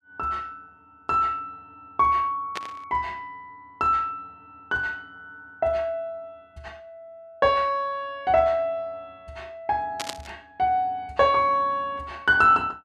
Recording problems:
burst of static; at 2.5 s and at 10 s; peak -2 dB vs average level

